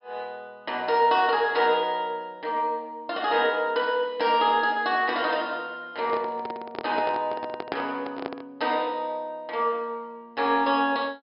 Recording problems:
low-pass filter; nothing above 5.5 kHz
microphone handling noise; from 6 to 8.5 s; peak -1 dB vs average level

